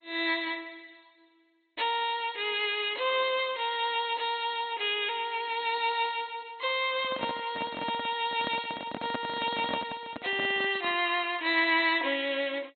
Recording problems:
lossy compression; MP2, log-spectral distance 5 dB, nothing above 3.8 kHz
handling noise; from 7 to 11 s; peak -1 dB vs average level

